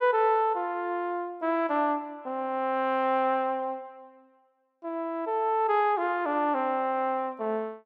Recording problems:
none

